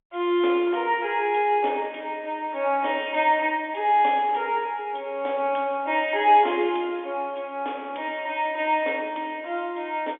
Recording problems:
telephone audio; 280 Hz to 3.6 kHz, G.711

